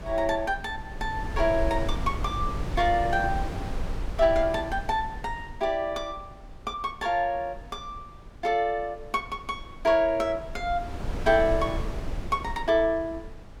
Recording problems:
wind noise; below 130 Hz, SNR 9 dB

